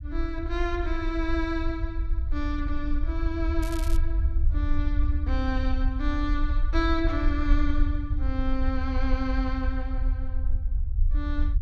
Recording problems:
low-frequency rumble; below 60 Hz, SNR -3 dB
crackle; at 3.5 s; loose cable, SNR 13 dB

